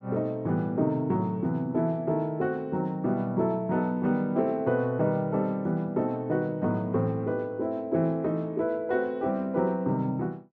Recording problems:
none

